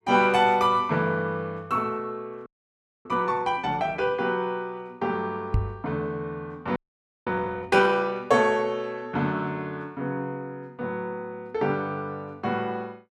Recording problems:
frozen audio; at 2.5 s for 0.5 s and at 7 s for 0.5 s
microphone thump; at 5.5 s; peak +5 dB vs average level

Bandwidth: 13.5 kHz